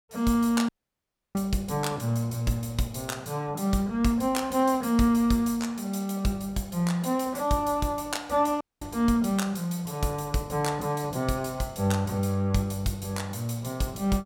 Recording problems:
audio cutting out; at 0.5 s for 0.5 s and at 8.5 s

